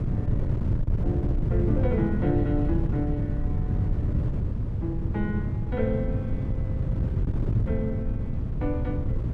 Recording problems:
wind noise; below 140 Hz, SNR -4 dB

